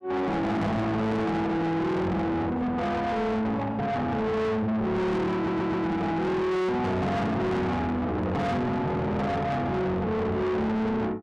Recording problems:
distortion; soft clipping, signal-to-distortion ratio 6 dB
audio stuttering; at 5.5 s

